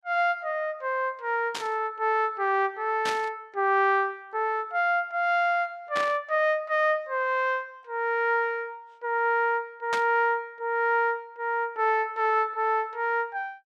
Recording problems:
burst of static; 4 times, first at 1.5 s; peak -2 dB vs average level

